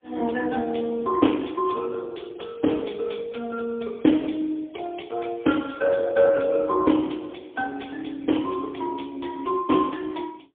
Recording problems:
phone line; 220 Hz to 2.3 kHz, AMR-NB, then MP3

